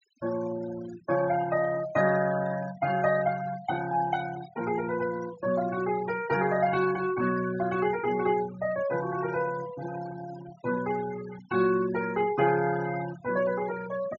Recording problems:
low-pass filter; nothing above 7 kHz
denoising artefacts; signal-to-artefact ratio 15 dB

